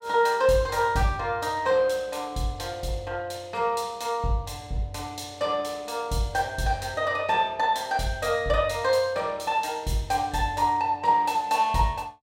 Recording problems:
none

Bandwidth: 16 kHz